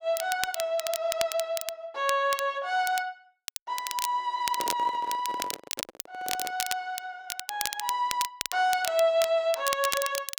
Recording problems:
crackling; vinyl, SNR 6 dB
handling noise; from 4.5 to 6.5 s; peak -5 dB vs average level

